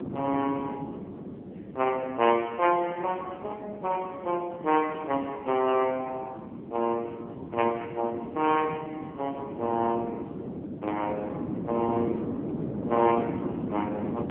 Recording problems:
telephone audio; 240 Hz to 3.1 kHz, AMR-NB
wind noise; below 380 Hz, SNR 7 dB

